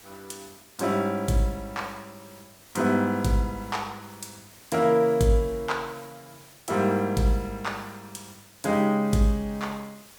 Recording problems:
background hiss; slope -1 dB per octave, SNR 24 dB

